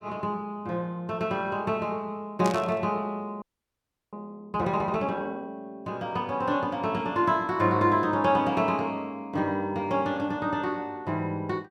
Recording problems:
burst of static; at 2.5 s; peak -2 dB vs average level
frozen audio; at 3.5 s for 0.5 s

